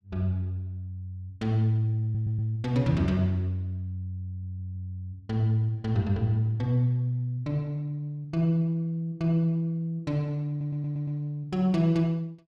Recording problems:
audio stuttering; at 2 s, at 4.5 s and at 10 s

